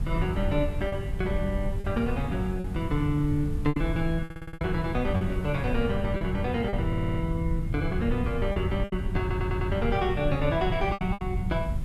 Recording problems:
hiss; slope -5 dB per octave, SNR 23 dB
low-frequency rumble; below 110 Hz, SNR 3 dB
lost packets; 6% of the sound replaced, filled with repeated pitch periods
stutter; at 4 s, at 7 s and at 9 s

